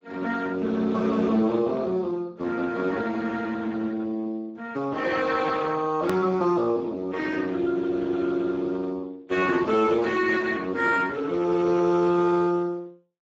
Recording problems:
codec artefacts; Speex, log-spectral distance 4 dB, nothing above 17.1 kHz
edit click; at 6 s

